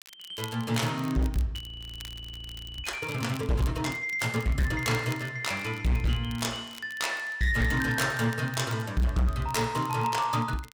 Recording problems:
distortion; hard clipping, signal-to-distortion ratio 10 dB
crackling; vinyl, SNR 20 dB
frozen audio; at 1.5 s for 1 s

